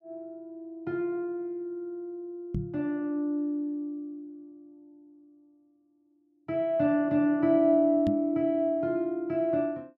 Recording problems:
microphone thump; at 2.5 s and at 8 s; peak 0 dB vs average level

